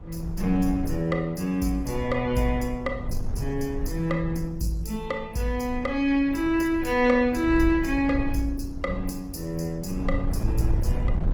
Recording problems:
lossy codec; Opus, log-spectral distance 2 dB, nothing above 19 kHz
wind noise; below 74 Hz, SNR 8 dB

